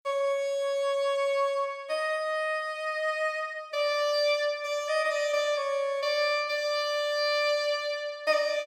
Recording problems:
none

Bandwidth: 16.5 kHz